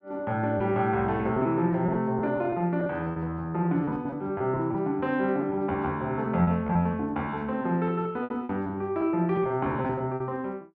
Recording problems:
lost packets; 10% of the sound replaced, filled with repeated pitch periods

